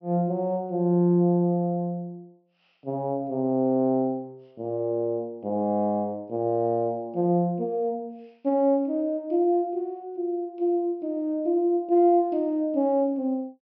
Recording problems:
low-pass filter; nothing above 5.5 kHz

